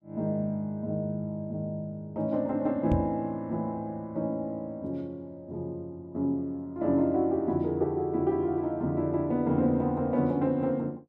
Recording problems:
knock on the microphone; at 3 s; peak +5 dB vs average level

